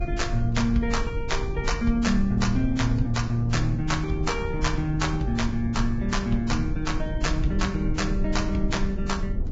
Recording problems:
lossy codec; Vorbis, log-spectral distance 2 dB, nothing above 7.3 kHz
rumble; below 88 Hz, SNR 5 dB

